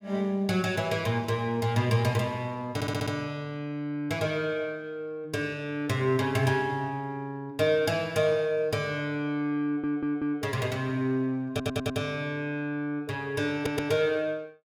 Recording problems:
audio stuttering; 4 times, first at 2.5 s

